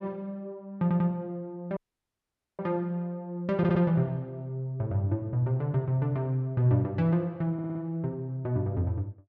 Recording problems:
stutter; at 1 s, at 3.5 s and at 7.5 s
audio cutting out; at 2 s for 1 s

